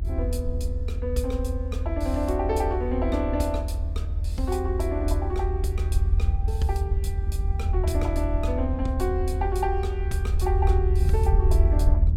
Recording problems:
low-frequency rumble; below 78 Hz, SNR -3 dB

